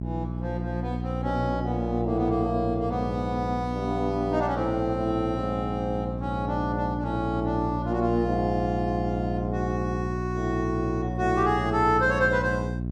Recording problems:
hum; 60 Hz, harmonics up to 660 Hz, SNR 4 dB

